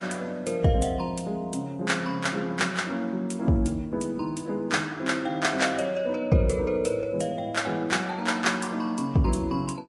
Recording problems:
lossy compression; MP3, then Vorbis, log-spectral distance 3 dB, nothing above 11 kHz

